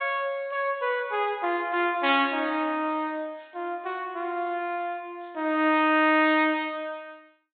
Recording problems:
low-pass filter; nothing above 4 kHz

